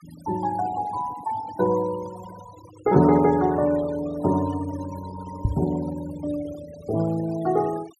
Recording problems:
denoising artefacts; signal-to-artefact ratio 18 dB
microphone thump; at 5.5 s; peak +5 dB vs average level

